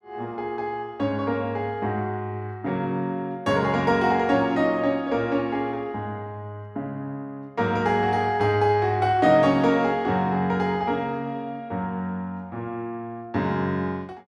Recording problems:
none

